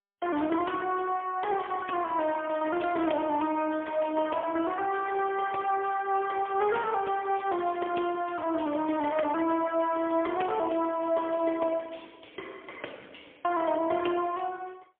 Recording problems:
phone line; 240 Hz to 3.2 kHz, AMR-NB, then MP3

